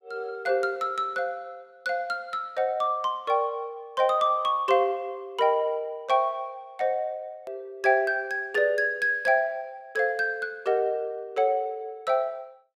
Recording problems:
hard cut with a click; at 7.5 s

